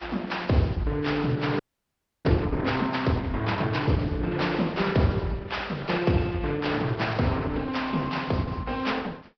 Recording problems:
codec artefacts; Opus, then Vorbis, log-spectral distance 4 dB, nothing above 5.3 kHz
frozen audio; at 1.5 s for 0.5 s

